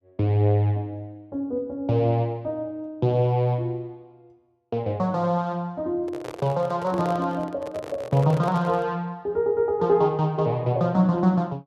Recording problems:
handling noise; from 6 to 9 s; peak -7 dB vs average level

